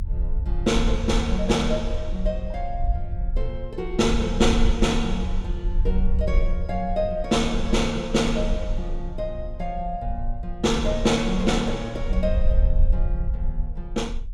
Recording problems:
low-frequency rumble; below 54 Hz, strongest tone 26 Hz, SNR 3 dB

